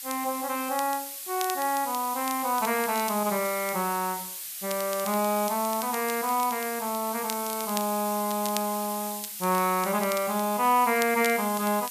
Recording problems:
hiss; slope +5 dB per octave, SNR 7 dB
crackling; vinyl, SNR 14 dB

